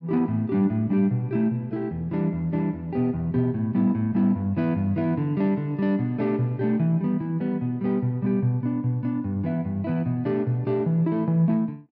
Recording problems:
none

